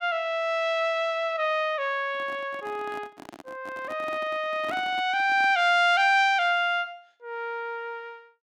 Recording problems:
microphone handling noise; from 2 to 5.5 s; peak -10 dB vs average level

